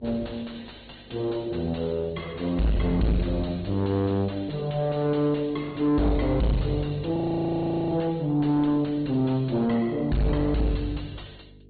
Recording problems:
treble cut off; nothing above 4.4 kHz
codec artefacts; Opus, log-spectral distance 4 dB
distorted audio; soft clipping, signal-to-distortion ratio 7 dB
electrical hum; 50 Hz, harmonics up to 450 Hz, SNR 26 dB
audio freezing; at 7 s for 1 s

